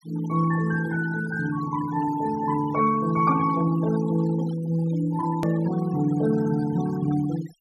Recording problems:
denoising artefacts; signal-to-artefact ratio 16 dB
click at an edit; at 5.5 s

